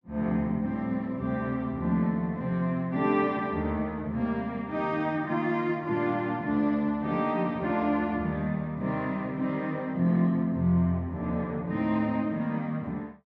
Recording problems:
none

